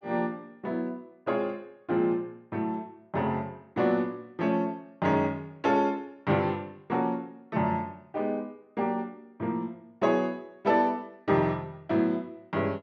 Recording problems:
none

